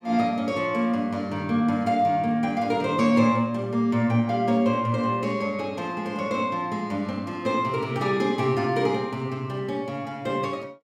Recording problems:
none

